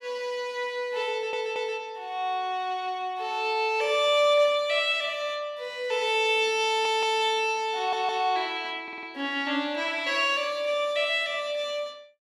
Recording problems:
stutter; 4 times, first at 1 s

